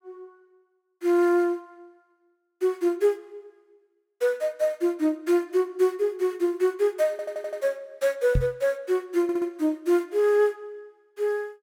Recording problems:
audio stuttering; at 7 s and at 9 s
knock on the microphone; at 8.5 s; peak +3 dB vs average level

